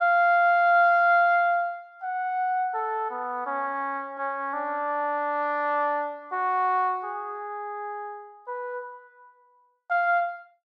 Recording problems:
none

